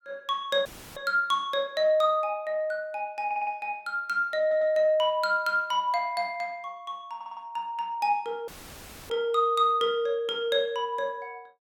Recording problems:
dropout; at 0.5 s and at 8.5 s for 0.5 s; filled with static
stutter; at 3.5 s, at 4.5 s and at 7 s

